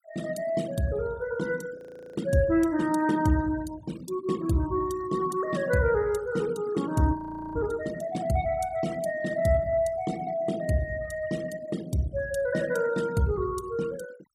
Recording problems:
denoising artefacts; signal-to-artefact ratio 19 dB
frozen audio; at 2 s and at 7 s

